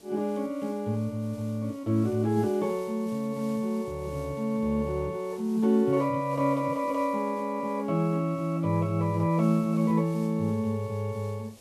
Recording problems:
hiss; SNR 25 dB

